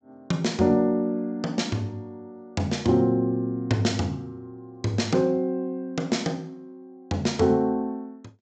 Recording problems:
low-pass filter; nothing above 8 kHz

